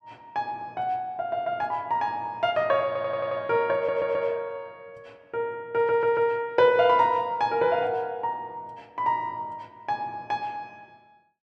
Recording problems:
audio stuttering; at 3 s, at 4 s and at 6 s

